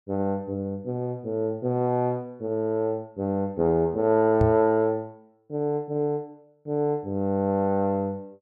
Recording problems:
microphone bump; at 4.5 s; peak +3 dB vs average level

